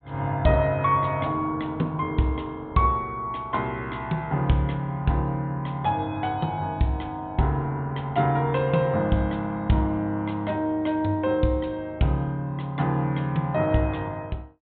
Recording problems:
low-pass filter; nothing above 4 kHz

